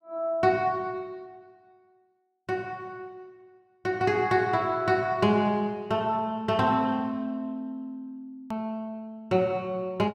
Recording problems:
click at an edit; at 8.5 s

